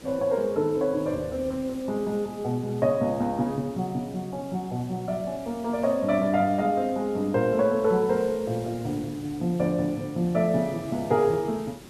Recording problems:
hiss; SNR 20 dB

